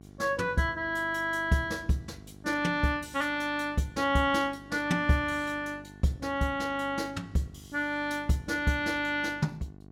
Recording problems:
hum; 50 Hz, harmonics up to 1.1 kHz, SNR 21 dB

